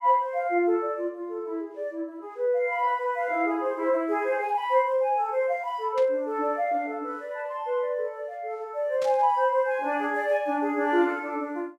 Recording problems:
burst of static; at 6 s and at 9 s; peak -11 dB vs average level

